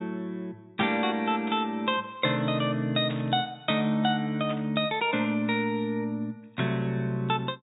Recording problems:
treble missing; nothing above 4 kHz
burst of static; at 1.5 s, at 3 s and at 4.5 s; peak -9 dB vs average level

